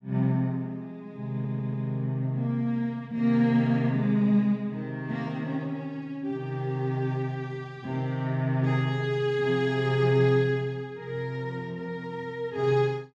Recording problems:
audio stuttering; at 1.5 s

